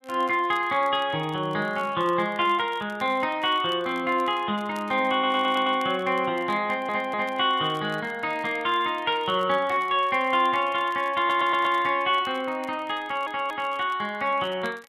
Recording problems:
crackling; vinyl, SNR 28 dB
stutter; 4 times, first at 5 s

